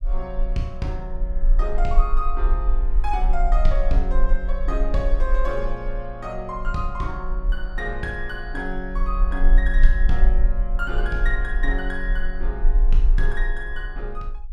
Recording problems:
rumble; below 38 Hz, strongest tone 26 Hz, SNR -4 dB

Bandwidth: 14.5 kHz